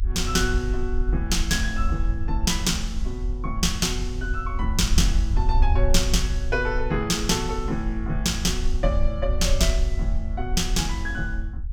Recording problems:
low-frequency rumble; below 58 Hz, SNR 2 dB

